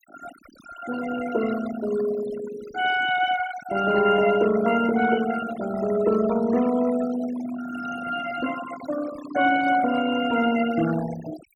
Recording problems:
denoising artefacts; signal-to-artefact ratio 13 dB

